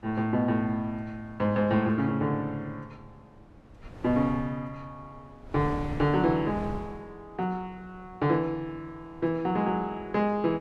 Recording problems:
wind on the microphone; below 290 Hz, SNR 17 dB

